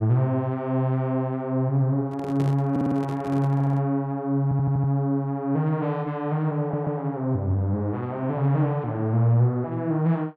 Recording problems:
handling noise; from 2 to 4 s; peak -6 dB vs average level
stutter; 4 times, first at 2.5 s

